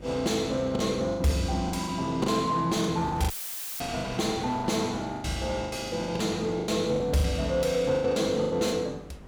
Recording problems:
distorted audio; soft clipping, signal-to-distortion ratio 10 dB
electrical hum; 50 Hz, harmonics up to 600 Hz, SNR 19 dB
wind on the microphone; below 1.3 kHz, SNR 22 dB
packet loss; 15% of the sound replaced, filled with the last packet
dropout; at 3.5 s for 0.5 s; filled with static

